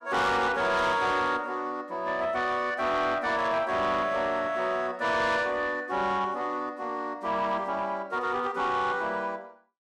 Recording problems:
distorted audio; soft clipping, signal-to-distortion ratio 10 dB

